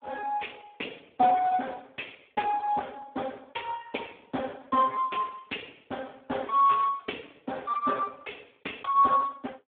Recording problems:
phone line; 220 Hz to 3.5 kHz, Speex

